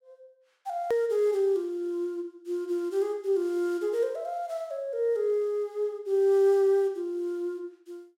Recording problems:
hard cut with a click; at 1 s

